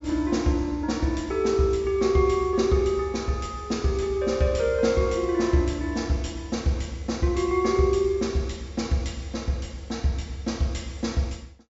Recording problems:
treble cut off; nothing above 8 kHz

